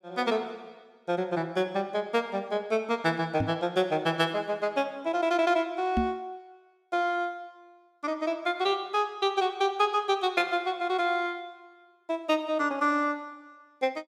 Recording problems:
microphone bump; at 3.5 s and at 6 s; peak +4 dB vs average level

